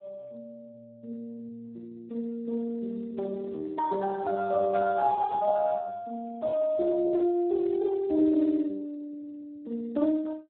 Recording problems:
phone line; 260 Hz to 2.1 kHz, Speex

